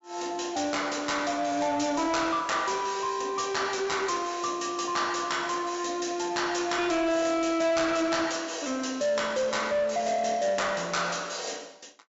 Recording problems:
treble missing; nothing above 8 kHz
distorted audio; soft clipping, signal-to-distortion ratio 11 dB

